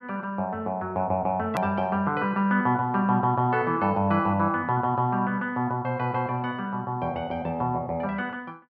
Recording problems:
hard cut with a click; at 1.5 s

